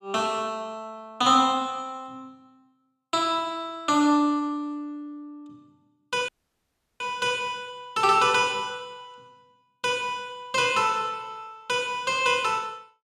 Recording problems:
audio cutting out; at 6.5 s for 0.5 s

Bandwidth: 14 kHz